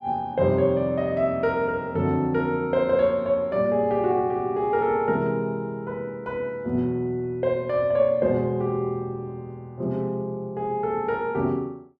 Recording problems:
none

